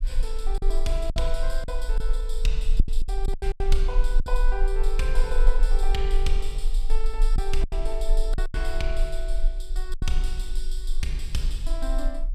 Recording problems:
low-frequency rumble; below 32 Hz, strongest tone 18 Hz, SNR -5 dB
packet loss; 7% of the sound replaced, filled with silence

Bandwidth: 14.5 kHz